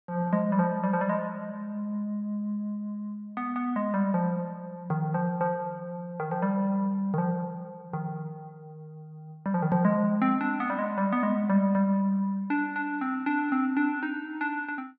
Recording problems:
none

